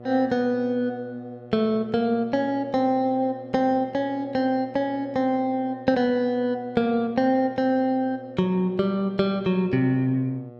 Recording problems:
hum; 60 Hz, harmonics up to 1.2 kHz, SNR 20 dB

